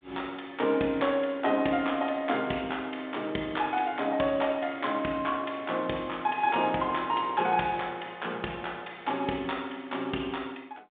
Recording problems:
telephone audio; 190 Hz to 3.6 kHz, G.726

